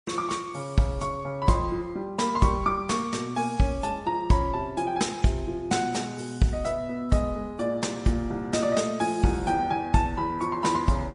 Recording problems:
codec artefacts; MP3, log-spectral distance 2 dB, nothing above 10.4 kHz

